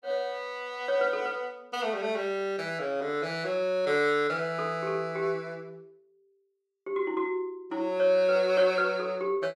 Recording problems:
none

